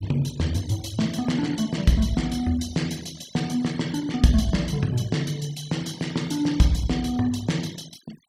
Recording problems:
noise reduction artefacts; signal-to-artefact ratio 20 dB

